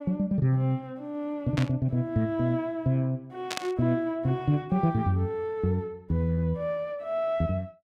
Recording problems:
burst of static; at 1.5 s and at 3.5 s; peak 0 dB vs average level

